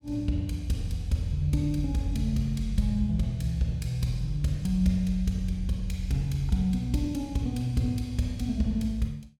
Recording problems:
none

